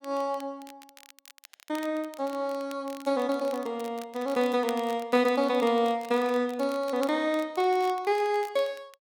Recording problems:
crackle; vinyl, SNR 21 dB

